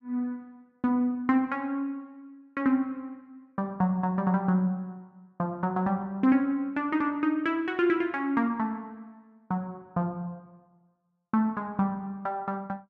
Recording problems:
none

